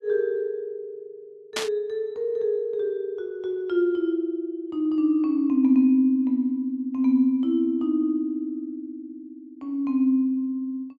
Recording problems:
static burst; at 1.5 s; peak +1 dB vs average level

